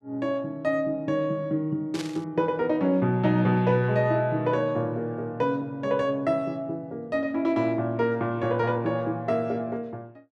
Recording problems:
static burst; at 2 s; peak -6 dB vs average level

